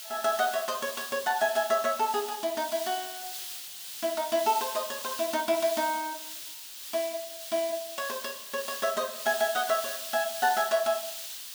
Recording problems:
background hiss; SNR 7 dB

